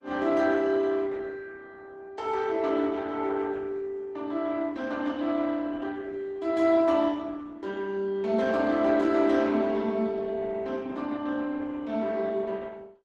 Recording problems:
lossy compression; Opus, log-spectral distance 3 dB, nothing above 11.6 kHz

